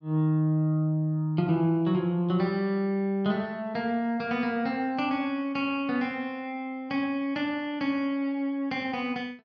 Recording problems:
none

